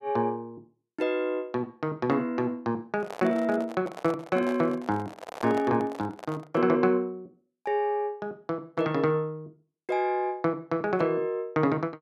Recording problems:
microphone handling noise; from 3 to 6.5 s; peak -5 dB vs average level

